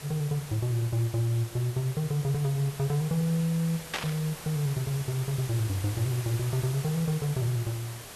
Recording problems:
background hiss; slope -2 dB per octave, SNR 12 dB
static burst; at 4 s; peak +2 dB vs average level

